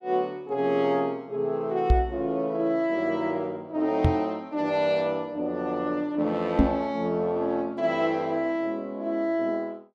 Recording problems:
microphone bump; at 2 s, at 4 s and at 6.5 s; peak +9 dB vs average level

